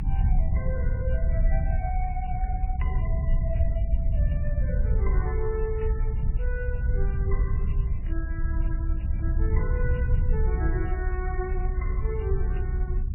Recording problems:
lossy compression; MP3, log-spectral distance 2 dB, nothing above 2.9 kHz
low-frequency rumble; below 74 Hz, SNR -9 dB

